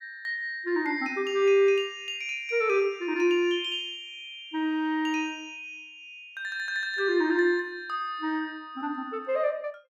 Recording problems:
none

